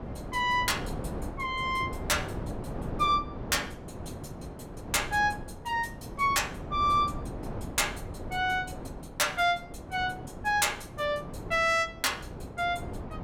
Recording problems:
wind noise; below 490 Hz, SNR 11 dB

